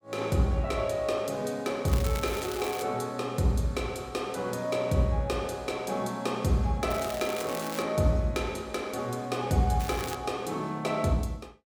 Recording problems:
crackling; at 2 s, at 7 s and at 10 s; loose cable, SNR 11 dB

